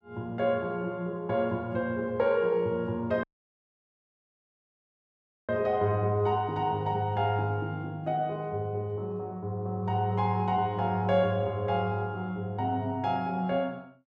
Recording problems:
dropout; at 3 s for 2.5 s

